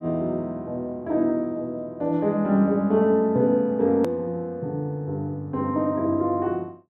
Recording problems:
hard cut with a click; at 4 s

